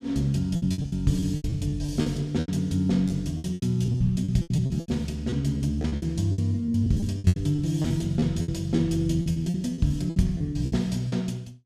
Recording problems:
packet loss; 17% of the sound replaced, filled with repeated pitch periods

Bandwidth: 15 kHz